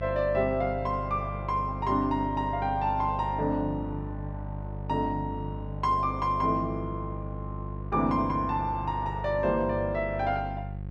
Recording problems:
electrical hum; 50 Hz, harmonics up to 550 Hz, SNR 8 dB

